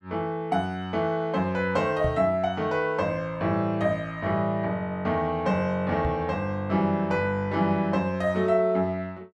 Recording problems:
microphone thump; at 2 s and at 6 s; peak 0 dB vs average level

